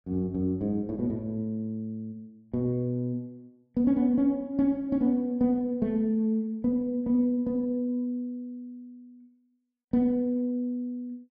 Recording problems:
none

